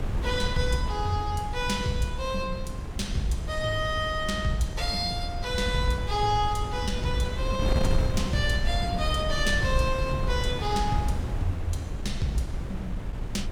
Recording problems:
wind on the microphone; below 120 Hz, SNR 3 dB

